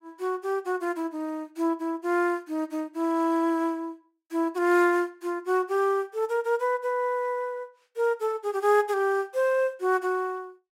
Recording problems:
none

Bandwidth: 16 kHz